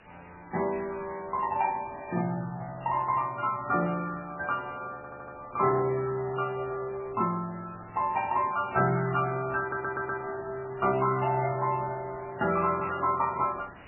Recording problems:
lossy codec; MP3, log-spectral distance 9 dB, nothing above 2.4 kHz
background hiss; SNR 22 dB
audio stuttering; at 5 s and at 9.5 s
burst of static; at 13 s; peak -10 dB vs average level

